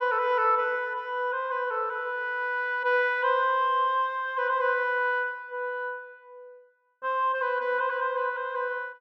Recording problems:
none

